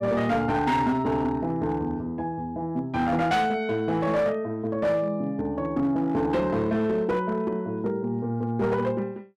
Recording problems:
distortion; hard clipping, signal-to-distortion ratio 12 dB

